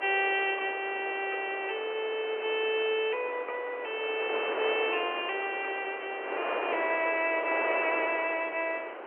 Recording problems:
telephone audio; 340 Hz to 3.1 kHz, G.711
wind noise; below 1.3 kHz, SNR 7 dB

